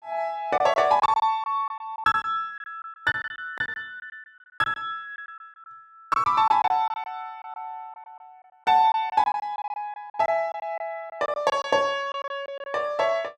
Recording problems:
packet loss; 12% of the sound replaced, filled with silence

